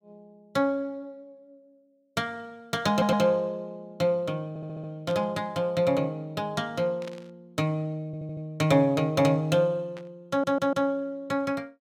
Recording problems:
stutter; 4 times, first at 3 s
static burst; at 5 s, at 7 s and at 10 s; peak -12 dB vs average level

